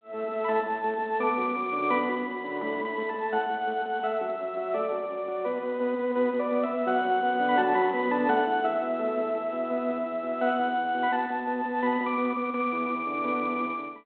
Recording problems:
telephone audio; 260 Hz to 3.9 kHz, G.726

